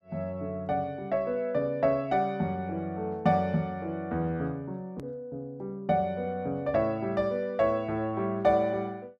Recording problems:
hard cut with a click; at 5 s

